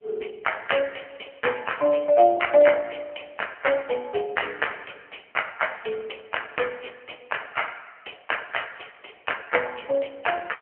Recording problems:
telephone audio; 320 Hz to 3.1 kHz, AMR-NB

